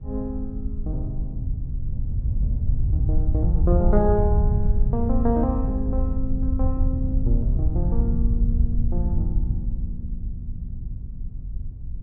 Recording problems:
wind on the microphone; below 80 Hz, SNR -3 dB

